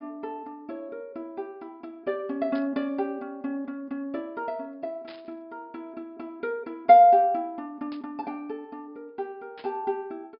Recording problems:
low-pass filter; nothing above 5.5 kHz
burst of static; 4 times, first at 2.5 s; peak -16 dB vs average level

